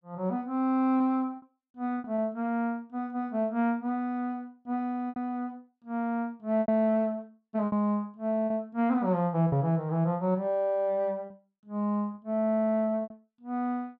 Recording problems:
packet loss; 5% of the sound replaced, filled with repeated pitch periods

